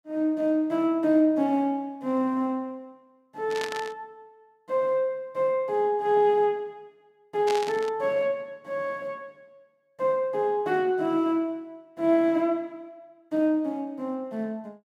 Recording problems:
static burst; at 3.5 s and at 7.5 s; peak -4 dB vs average level

